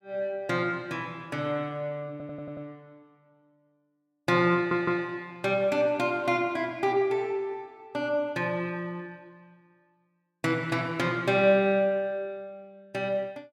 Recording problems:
audio stuttering; at 2 s and at 4.5 s

